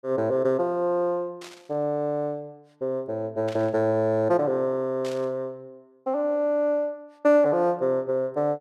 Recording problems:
burst of static; at 1.5 s, at 3.5 s and at 5 s; peak -12 dB vs average level

